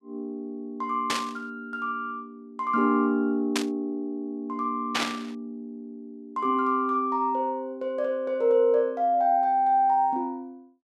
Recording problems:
burst of static; at 1 s, at 3.5 s and at 5 s; peak +4 dB vs average level

